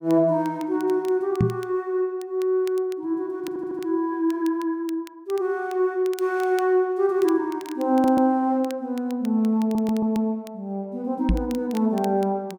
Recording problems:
crackling; vinyl, SNR 23 dB
knock on the microphone; at 1.5 s and at 11 s; peak +6 dB vs average level
stutter; at 3.5 s, at 8 s and at 9.5 s

